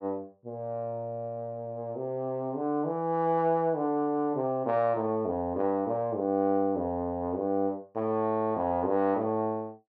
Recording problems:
none

